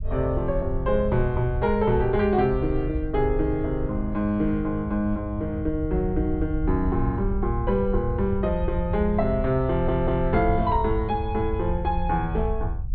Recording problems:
low-pass filter; nothing above 4.5 kHz
rumble; below 80 Hz, SNR 6 dB
audio stuttering; at 9.5 s

